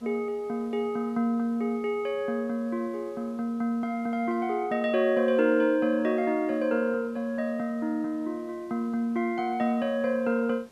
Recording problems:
hiss; slope -4 dB per octave, SNR 29 dB

